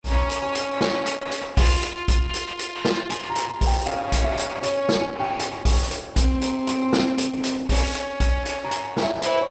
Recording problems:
lossy codec; Opus, log-spectral distance 5 dB, nothing above 8 kHz

